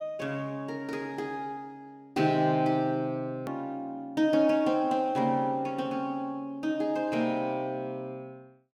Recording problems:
click at an edit; at 3.5 s

